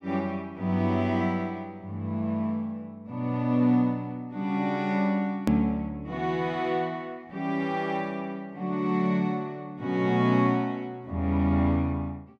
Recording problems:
edit click; at 5.5 s

